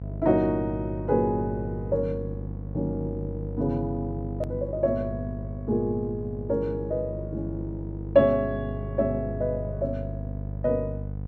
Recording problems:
electrical hum; 50 Hz, harmonics up to 550 Hz, SNR 7 dB
click at an edit; at 4.5 s

